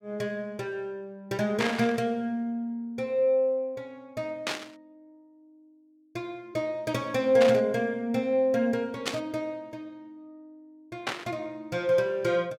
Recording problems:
burst of static; 5 times, first at 1.5 s; peak +3 dB vs average level

